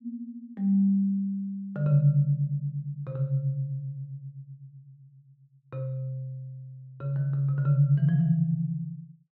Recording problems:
none

